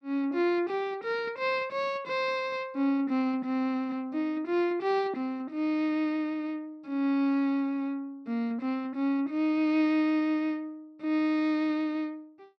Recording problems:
none

